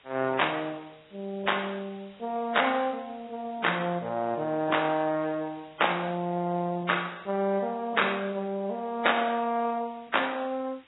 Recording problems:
lossy compression; AAC, then Vorbis, log-spectral distance 8 dB, nothing above 3.8 kHz
hiss; SNR 28 dB

